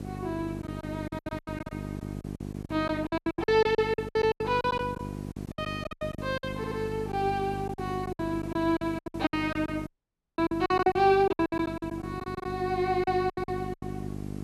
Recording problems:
hum; 50 Hz, harmonics up to 800 Hz, SNR 9 dB
background hiss; slope -6 dB per octave, SNR 21 dB
lost packets; 18% of the sound replaced, filled with silence
stutter; at 6.5 s
audio cutting out; at 10 s for 0.5 s

